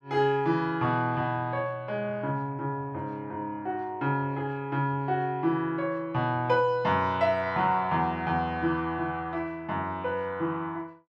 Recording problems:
none

